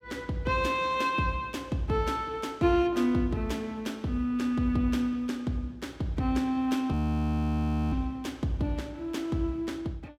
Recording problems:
frozen audio; at 7 s for 1 s

